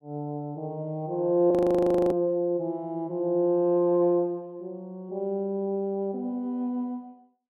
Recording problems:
audio freezing; at 1.5 s for 0.5 s

